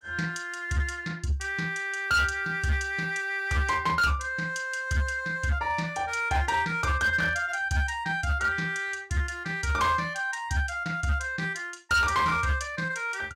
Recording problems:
distortion; hard clipping, signal-to-distortion ratio 10 dB

